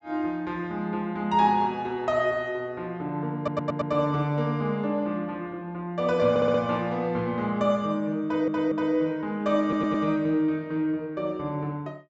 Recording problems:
treble cut off; nothing above 7.8 kHz
stutter; 4 times, first at 3.5 s

